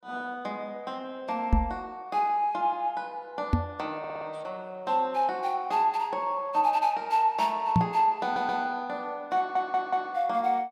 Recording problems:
knock on the microphone; at 1.5 s, at 3.5 s and at 8 s; peak +8 dB vs average level
audio stuttering; at 4 s, at 8 s and at 9.5 s

